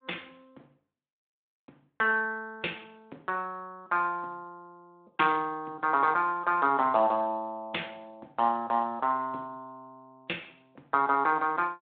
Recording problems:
telephone audio; 260 Hz to 3.6 kHz, Speex

